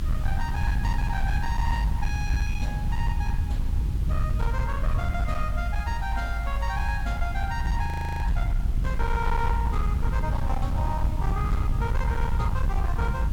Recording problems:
distorted audio; hard clipping, signal-to-distortion ratio 10 dB
hiss; SNR 16 dB
rumble; below 86 Hz, SNR -5 dB
audio freezing; at 8 s

